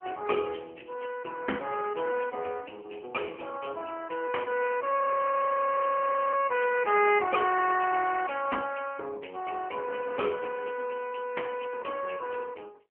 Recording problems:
telephone audio; 320 Hz to 2.9 kHz, AMR-NB
audio freezing; at 5 s for 1.5 s

